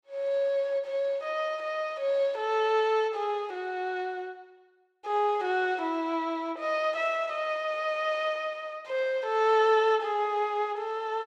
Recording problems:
none

